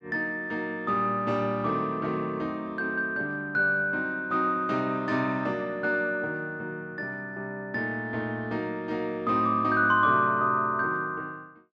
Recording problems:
none

